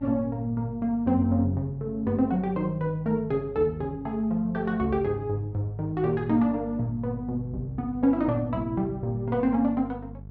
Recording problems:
hum; 50 Hz, harmonics up to 450 Hz, SNR 17 dB

